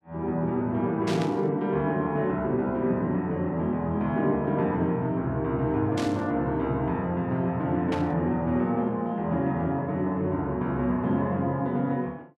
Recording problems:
burst of static; at 1 s, at 6 s and at 8 s; peak -5 dB vs average level

